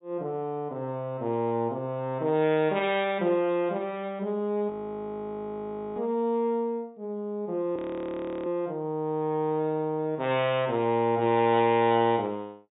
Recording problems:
treble missing; nothing above 4 kHz
frozen audio; at 4.5 s for 1.5 s and at 8 s for 0.5 s

